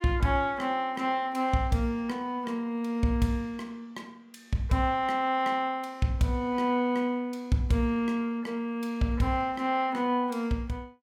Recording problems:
none

